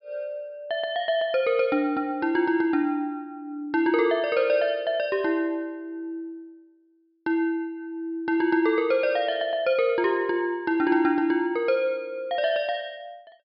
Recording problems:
low-pass filter; nothing above 5.5 kHz

